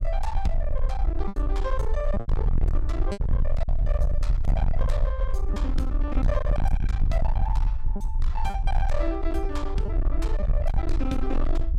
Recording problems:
distorted audio; hard clipping, signal-to-distortion ratio 6 dB
low-frequency rumble; below 54 Hz, strongest tone 22 Hz, SNR -6 dB
lost packets; 4% of the sound replaced, filled with repeated pitch periods

